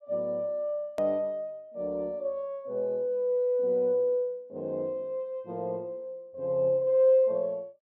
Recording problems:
edit click; at 1 s

